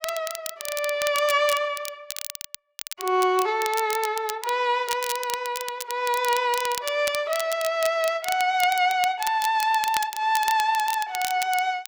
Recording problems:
crackle; vinyl, SNR 10 dB

